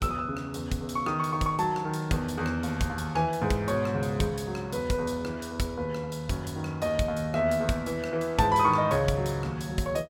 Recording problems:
none

